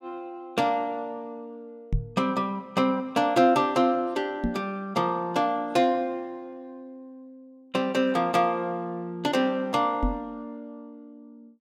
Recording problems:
microphone bump; at 2 s, at 4.5 s and at 10 s; peak +3 dB vs average level

